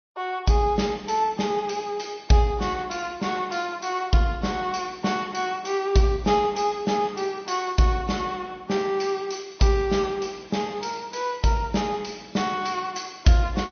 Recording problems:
low-pass filter; nothing above 6.2 kHz
lossy compression; MP3, log-spectral distance 4 dB

